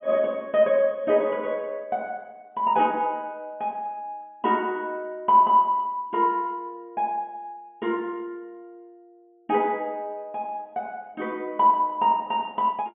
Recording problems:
treble cut off; nothing above 3.4 kHz

